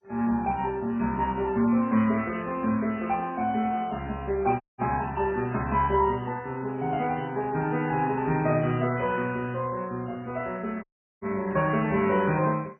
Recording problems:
lossy codec; MP3, then MP2, log-spectral distance 3 dB, nothing above 2.7 kHz
audio cutting out; at 4.5 s and at 11 s

